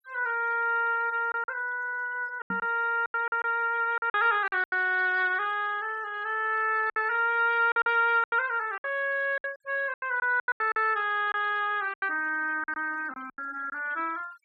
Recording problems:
denoising artefacts; signal-to-artefact ratio 25 dB
lost packets; 10% of the sound replaced, filled with silence
microphone thump; at 2.5 s; peak -7 dB vs average level

